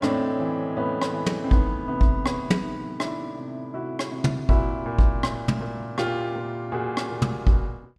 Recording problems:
none

